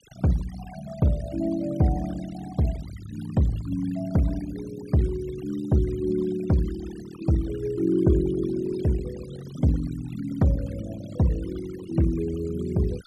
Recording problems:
noise reduction artefacts; signal-to-artefact ratio 18 dB

